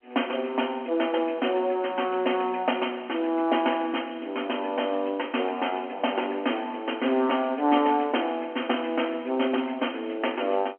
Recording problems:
telephone audio; 220 Hz to 3.2 kHz, G.711

